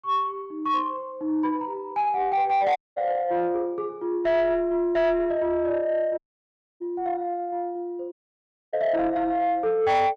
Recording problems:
distortion; soft clipping, signal-to-distortion ratio 11 dB
audio cutting out; at 3 s, at 6 s for 0.5 s and at 8 s for 0.5 s

